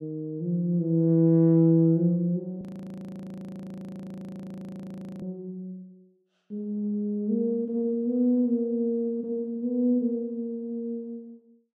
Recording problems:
frozen audio; at 2.5 s for 2.5 s

